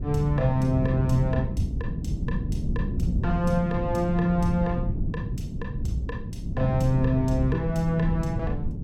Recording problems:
wind on the microphone; below 170 Hz, SNR 4 dB

